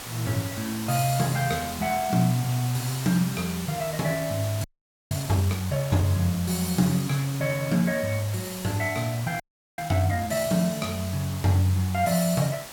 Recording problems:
hiss; slope -2 dB per octave, SNR 11 dB
audio freezing; at 4.5 s and at 9.5 s

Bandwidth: 17 kHz